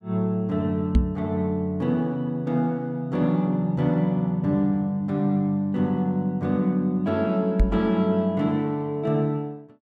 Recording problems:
microphone thump; at 1 s and at 7.5 s; peak +8 dB vs average level

